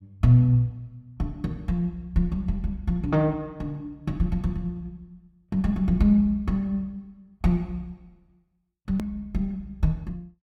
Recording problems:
click at an edit; at 9 s

